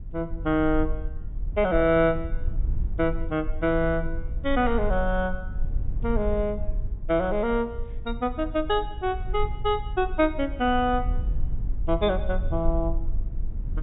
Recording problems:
low-pass filter; nothing above 3.8 kHz
rumble; below 54 Hz, SNR 7 dB

